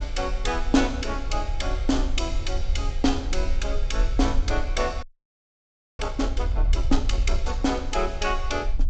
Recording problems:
treble missing; nothing above 8 kHz
rumble; below 54 Hz, SNR 2 dB
audio freezing; at 5 s for 1 s

